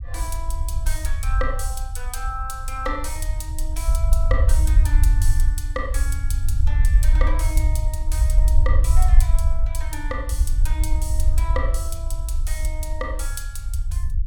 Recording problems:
low-frequency rumble; below 60 Hz, SNR -9 dB

